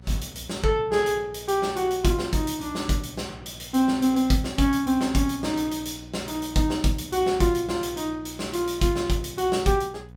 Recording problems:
hum; 60 Hz, harmonics up to 960 Hz, SNR 20 dB

